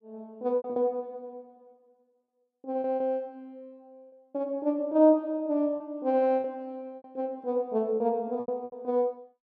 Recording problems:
packet loss; 7% of the sound replaced, filled with repeated pitch periods

